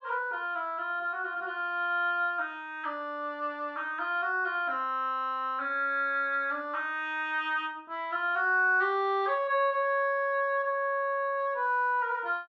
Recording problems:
none

